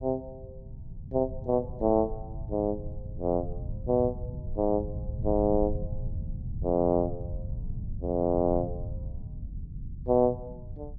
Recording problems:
treble missing; nothing above 7.4 kHz
low-frequency rumble; below 120 Hz, SNR 9 dB

